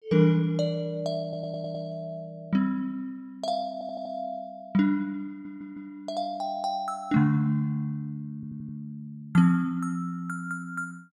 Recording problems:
stutter; 4 times, first at 1 s

